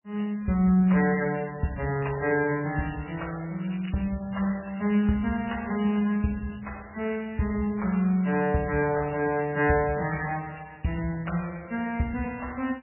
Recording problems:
lossy compression; MP3, log-spectral distance 7 dB, nothing above 2.9 kHz
crackle; from 3.5 to 5 s; loose cable, SNR 21 dB

